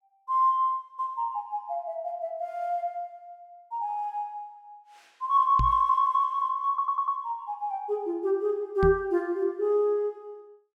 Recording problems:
knock on the microphone; at 5.5 s and at 9 s; peak +2 dB vs average level
audio stuttering; at 6.5 s

